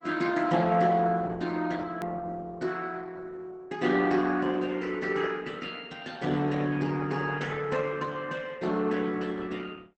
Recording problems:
lossy compression; Opus, log-spectral distance 4 dB
edit click; at 2 s

